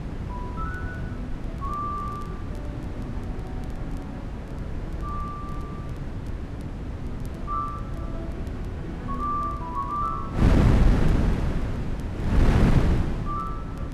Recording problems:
wind noise; below 220 Hz, SNR -7 dB
crackling; vinyl, SNR 27 dB

